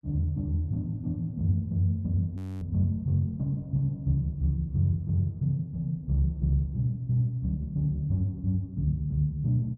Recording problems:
audio freezing; at 2.5 s

